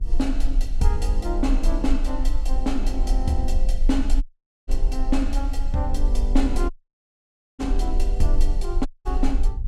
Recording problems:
electrical hum; 50 Hz, harmonics up to 500 Hz, SNR 20 dB
low-frequency rumble; below 38 Hz, strongest tone 24 Hz, SNR -2 dB
audio cutting out; at 4 s, at 6.5 s for 1 s and at 9 s

